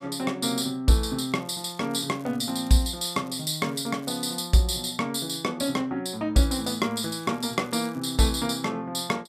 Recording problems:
crackle; from 1 to 4.5 s and from 6.5 to 8.5 s; loose cable, SNR 27 dB

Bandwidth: 14.5 kHz